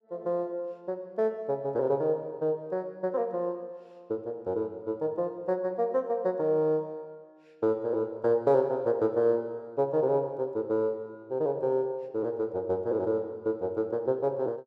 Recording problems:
none

